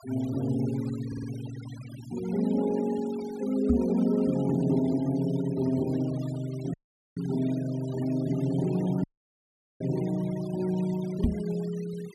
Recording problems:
noise reduction artefacts; signal-to-artefact ratio 19 dB
audio stuttering; at 1 s
microphone bump; at 3.5 s and at 11 s; peak +8 dB vs average level
audio cutting out; at 6.5 s and at 9 s for 1 s

